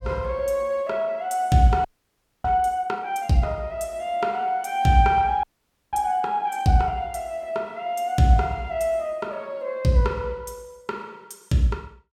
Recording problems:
frozen audio; at 2 s for 0.5 s and at 5.5 s for 0.5 s

